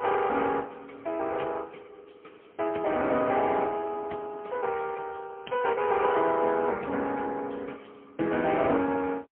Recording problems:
phone line; 240 Hz to 3.3 kHz, AMR-NB, then MP3

